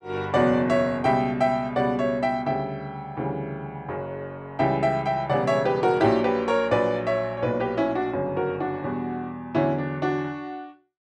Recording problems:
none

